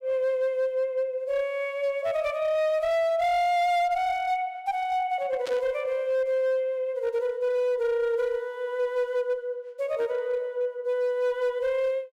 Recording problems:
distortion; hard clipping, uneven, signal-to-distortion ratio 12 dB
burst of static; at 5.5 s; peak -7 dB vs average level

